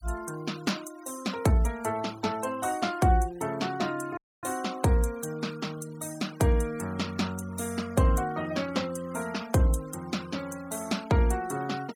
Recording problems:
denoising artefacts; signal-to-artefact ratio 19 dB
audio cutting out; at 4 s

